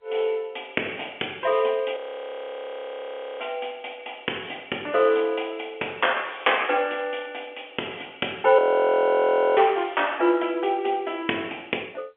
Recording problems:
phone line; 260 Hz to 3.4 kHz, G.711
audio freezing; at 2 s for 1.5 s and at 8.5 s for 1 s

